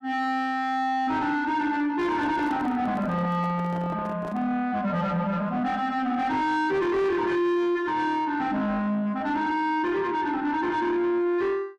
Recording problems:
distorted audio; soft clipping, signal-to-distortion ratio 8 dB
handling noise; from 2 to 4.5 s; peak -5 dB vs average level

